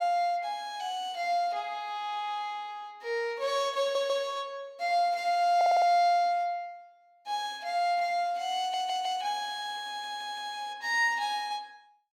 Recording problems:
stutter; 4 times, first at 4 s

